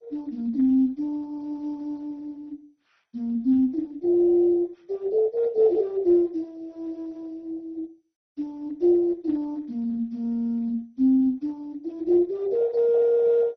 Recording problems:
lossy compression; Speex, then MP2, log-spectral distance 2 dB, nothing above 5.8 kHz

